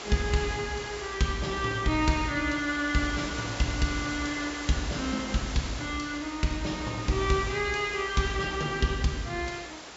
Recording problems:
low-pass filter; nothing above 8 kHz
background hiss; slope -3 dB per octave, SNR 10 dB

